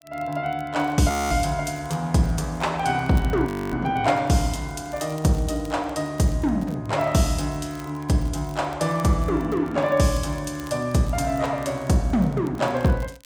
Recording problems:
crackling; vinyl, SNR 27 dB
frozen audio; at 1 s and at 3.5 s

